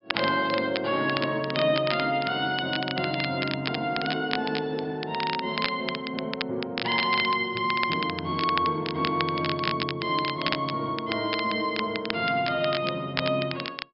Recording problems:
treble cut off; nothing above 5.5 kHz
crackling; vinyl, SNR 7 dB

